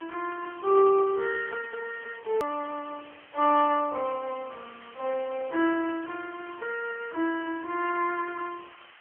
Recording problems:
phone line; 280 Hz to 3.2 kHz, AMR-NB
background hiss; SNR 22 dB
edit click; at 2.5 s

